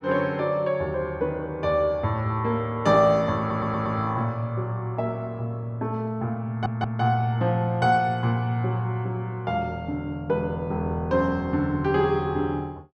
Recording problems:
stutter; at 3.5 s and at 6.5 s

